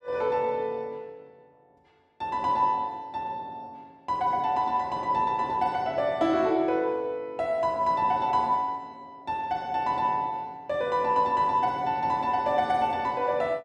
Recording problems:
none

